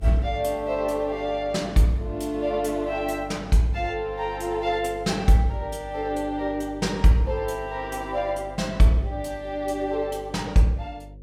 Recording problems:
hum; 50 Hz, harmonics up to 550 Hz, SNR 18 dB

